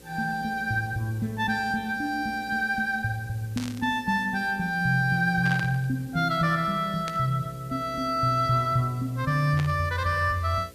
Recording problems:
electrical hum; 60 Hz, harmonics up to 540 Hz, SNR 24 dB
hiss; slope 0 dB per octave, SNR 26 dB
burst of static; 4 times, first at 3.5 s; peak -6 dB vs average level

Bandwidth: 14.5 kHz